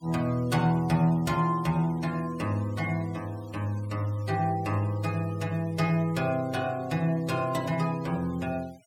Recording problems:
denoising artefacts; signal-to-artefact ratio 23 dB

